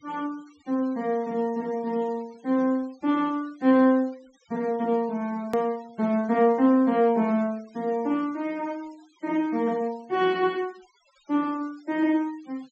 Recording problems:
low-pass filter; nothing above 8 kHz
denoising artefacts; signal-to-artefact ratio 27 dB
hard cut with a click; at 5.5 s

